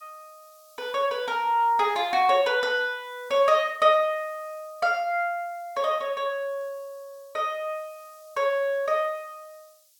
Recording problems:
background hiss; slope +9 dB per octave, SNR 30 dB

